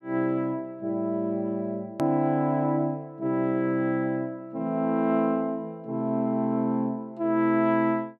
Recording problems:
edit click; at 2 s

